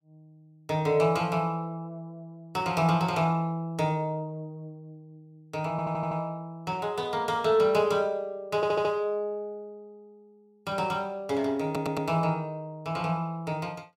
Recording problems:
audio stuttering; at 5.5 s, at 8.5 s and at 12 s

